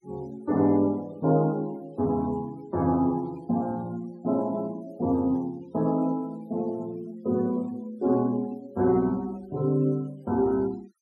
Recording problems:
denoising artefacts; signal-to-artefact ratio 26 dB

